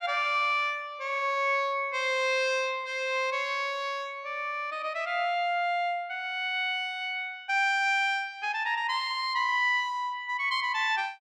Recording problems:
none

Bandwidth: 13 kHz